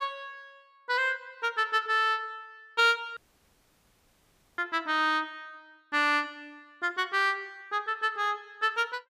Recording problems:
audio cutting out; at 3 s for 1.5 s

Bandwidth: 15 kHz